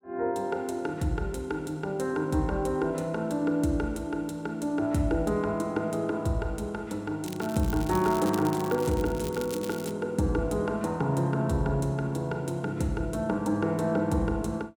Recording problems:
crackle; from 7.5 to 10 s; loose cable, SNR 14 dB

